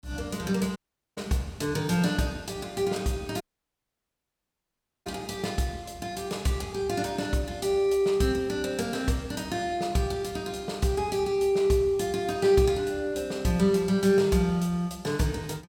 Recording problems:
dropout; at 1 s and at 3.5 s for 1.5 s

